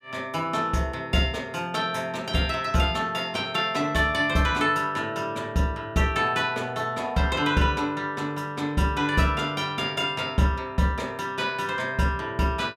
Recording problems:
none

